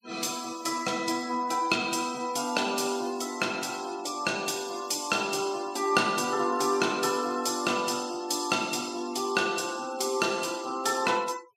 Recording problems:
noise reduction artefacts; signal-to-artefact ratio 19 dB

